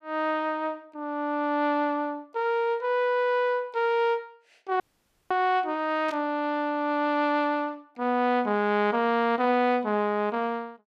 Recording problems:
dropout; at 5 s for 0.5 s
burst of static; at 6 s; peak -13 dB vs average level

